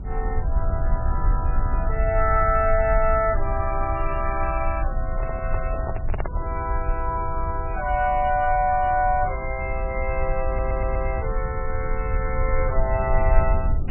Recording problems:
codec artefacts; MP3, log-spectral distance 2 dB
rumble; below 66 Hz, SNR 3 dB
microphone handling noise; from 5 to 6.5 s; peak -2 dB vs average level
audio stuttering; at 10 s

